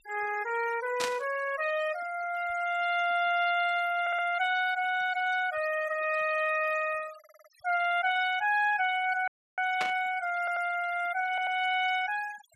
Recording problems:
denoising artefacts; signal-to-artefact ratio 17 dB
static burst; at 1 s and at 10 s; peak 0 dB vs average level
audio stuttering; 4 times, first at 4 s
dropout; at 9.5 s

